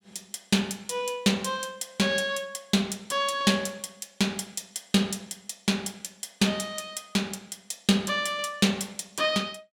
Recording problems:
none

